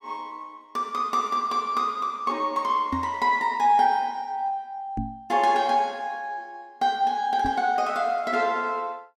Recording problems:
microphone bump; at 3 s, at 5 s and at 7.5 s; peak -1 dB vs average level

